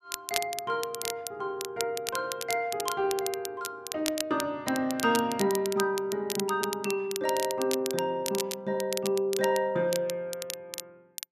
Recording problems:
crackle; vinyl, SNR 7 dB

